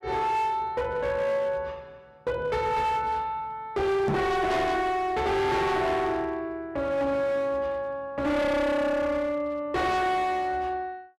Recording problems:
distorted audio; hard clipping, uneven, signal-to-distortion ratio 7 dB
knock on the microphone; at 4 s; peak +4 dB vs average level

